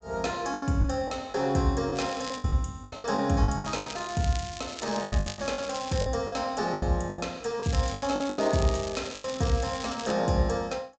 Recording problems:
treble cut off; nothing above 8 kHz
packet loss; 13% of the sound replaced, filled with the last packet
crackling; at 2 s, from 3.5 to 6 s and from 7.5 to 10 s; loose cable, SNR 12 dB

